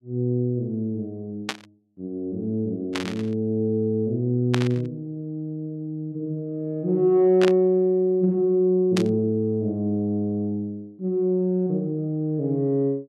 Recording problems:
burst of static; 5 times, first at 1.5 s; peak +1 dB vs average level

